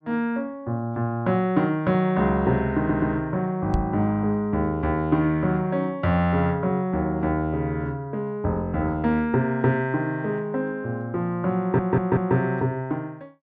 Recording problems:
audio stuttering; at 3 s and at 12 s
microphone thump; at 3.5 s; peak +3 dB vs average level

